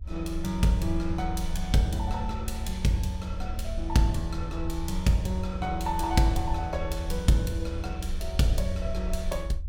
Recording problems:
low-frequency rumble; below 70 Hz, SNR 7 dB

